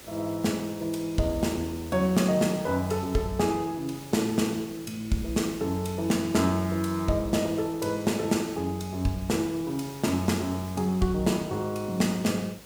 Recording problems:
electrical hum; 50 Hz, harmonics up to 600 Hz, SNR 28 dB
background hiss; slope -2 dB per octave, SNR 18 dB

